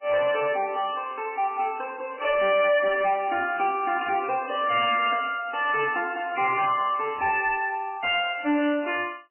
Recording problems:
lossy compression; MP3, log-spectral distance 5 dB, nothing above 2.7 kHz
distorted audio; soft clipping, signal-to-distortion ratio 10 dB

